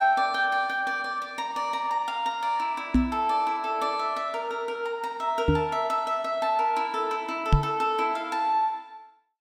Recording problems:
microphone thump; at 3 s, at 5.5 s and at 7.5 s; peak +9 dB vs average level

